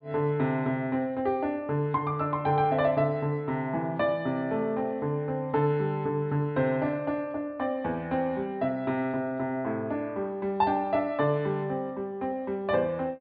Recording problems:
treble cut off; nothing above 4.8 kHz

